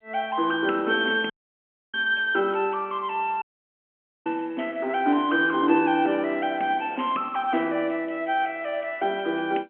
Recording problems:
phone line; 220 Hz to 3.5 kHz, G.711
dropout; at 1.5 s for 0.5 s and at 3.5 s for 1 s

